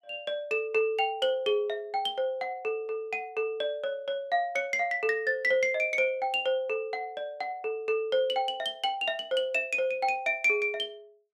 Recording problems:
none

